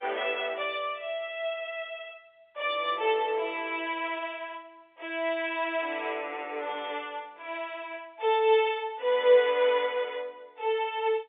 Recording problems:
telephone audio; 340 Hz to 3.6 kHz, G.711

